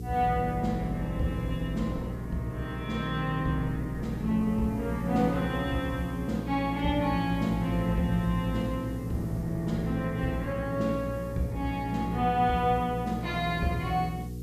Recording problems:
hum; 60 Hz, harmonics up to 480 Hz, SNR 8 dB
hiss; slope +6 dB per octave, SNR 28 dB
wind noise; below 320 Hz, SNR 19 dB

